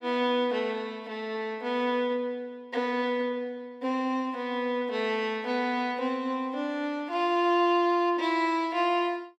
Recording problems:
none

